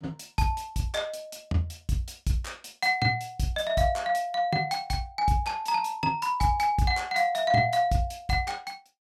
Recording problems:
none

